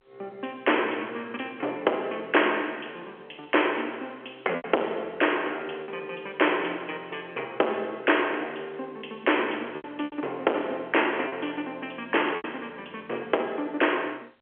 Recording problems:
phone line; 320 Hz to 3.3 kHz, G.711
distorted audio; hard clipping, signal-to-distortion ratio 13 dB
lost packets; 3% of the sound replaced, filled with repeated pitch periods

